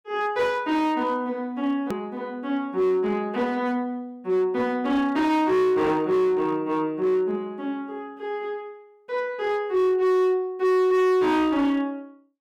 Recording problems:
distortion; hard clipping, signal-to-distortion ratio 8 dB
click at an edit; at 2 s

